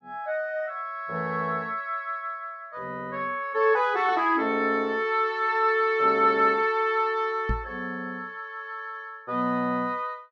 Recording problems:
microphone thump; at 7.5 s; peak 0 dB vs average level

